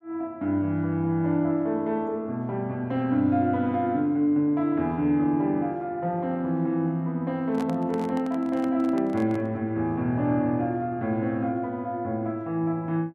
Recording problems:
handling noise; from 7.5 to 9.5 s; peak -6 dB vs average level

